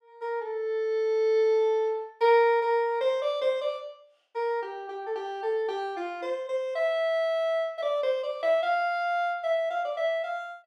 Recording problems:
none

